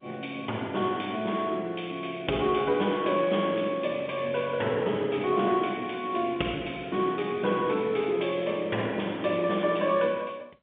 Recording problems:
telephone audio; 150 Hz to 3.6 kHz, G.711

